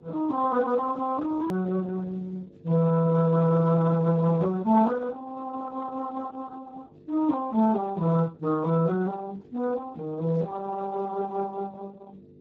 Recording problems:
lossy codec; Opus, then Speex, log-spectral distance 3 dB, nothing above 14.6 kHz
mains hum; 50 Hz, harmonics up to 550 Hz, SNR 26 dB
hard cut with a click; at 1.5 s

